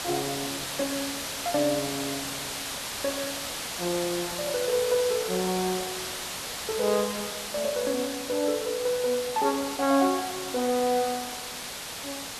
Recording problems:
background hiss; SNR 4 dB

